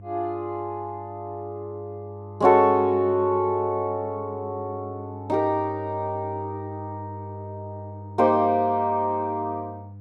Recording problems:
electrical hum; 50 Hz, harmonics up to 500 Hz, SNR 15 dB

